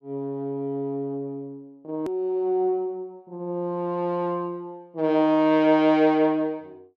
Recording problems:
edit click; at 2 s

